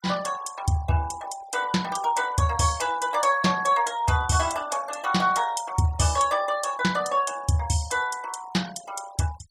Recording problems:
noise reduction artefacts; signal-to-artefact ratio 19 dB

